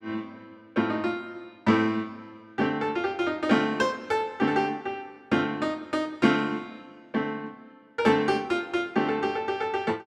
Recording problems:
none

